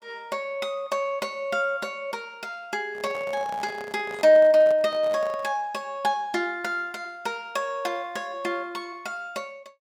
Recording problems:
microphone handling noise; from 3 to 5.5 s; peak -9 dB vs average level

